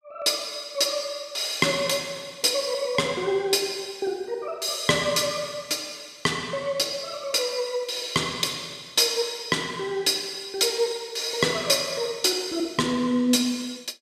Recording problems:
none

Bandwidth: 14.5 kHz